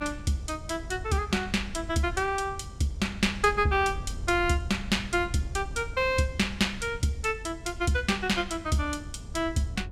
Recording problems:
low-frequency rumble; below 96 Hz, SNR 12 dB

